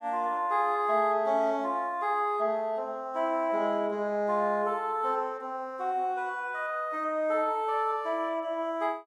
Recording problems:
none

